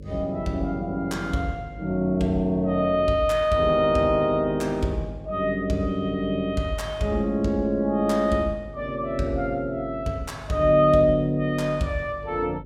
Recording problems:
hum; 50 Hz, harmonics up to 600 Hz, SNR 18 dB

